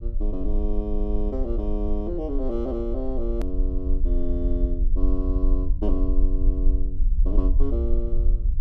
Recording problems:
low-frequency rumble; below 46 Hz, strongest tone 20 Hz, SNR -4 dB
edit click; at 3.5 s

